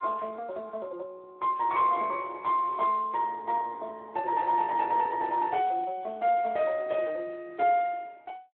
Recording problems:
phone line; 300 Hz to 3.6 kHz, Speex

